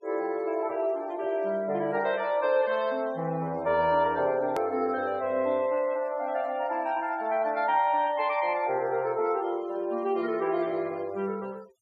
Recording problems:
noise reduction artefacts; signal-to-artefact ratio 24 dB
edit click; at 4.5 s

